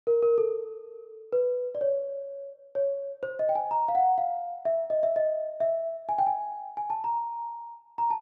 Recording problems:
none

